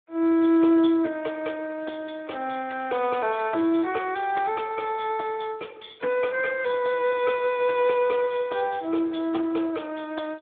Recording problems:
telephone audio; 280 Hz to 3.5 kHz, Speex

